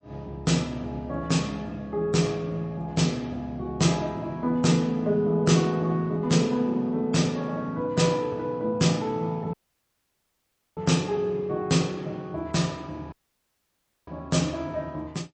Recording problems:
codec artefacts; MP3, log-spectral distance 2 dB, nothing above 8.2 kHz
dropout; at 9.5 s for 1 s and at 13 s for 1 s

